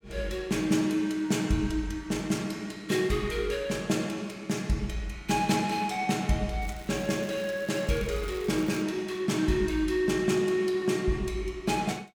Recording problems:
crackling; from 6.5 to 9 s; loose cable, SNR 21 dB

